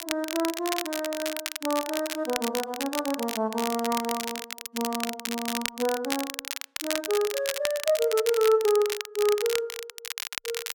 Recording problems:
crackle; vinyl, SNR 5 dB

